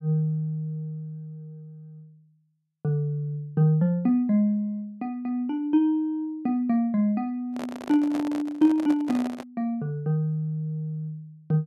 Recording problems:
handling noise; from 7.5 to 9.5 s; peak -5 dB vs average level

